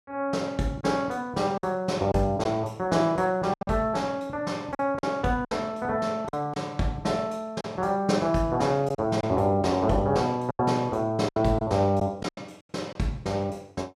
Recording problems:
packet loss; 6% of the sound replaced, filled with silence

